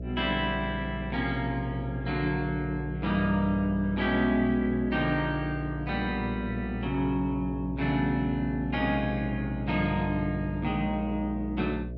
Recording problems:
electrical hum; 60 Hz, harmonics up to 660 Hz, SNR 9 dB

